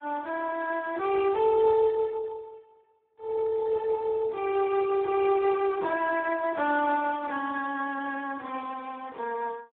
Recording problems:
telephone audio; 280 Hz to 2.2 kHz, Speex

